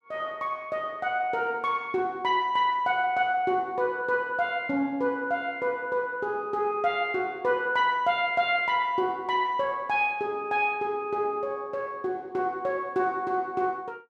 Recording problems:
none

